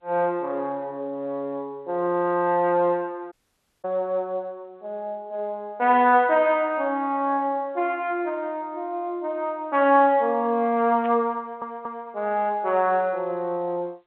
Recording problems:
phone line; 300 Hz to 3.4 kHz, G.711
audio cutting out; at 3.5 s for 0.5 s
static burst; at 11 s; peak -13 dB vs average level
stutter; at 11 s

